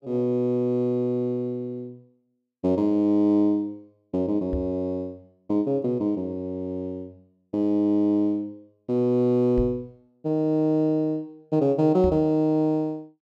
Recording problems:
microphone thump; at 4.5 s, at 9.5 s and at 12 s; peak -2 dB vs average level

